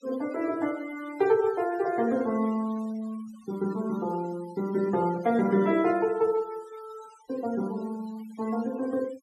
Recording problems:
denoising artefacts; signal-to-artefact ratio 21 dB

